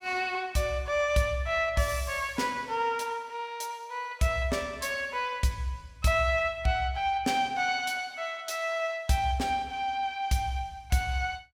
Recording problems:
none

